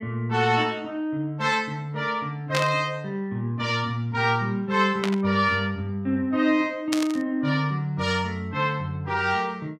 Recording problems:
static burst; at 2.5 s, at 5 s and at 7 s; peak +1 dB vs average level

